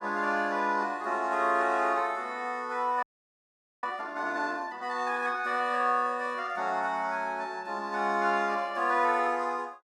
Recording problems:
frozen audio; at 3 s for 1 s

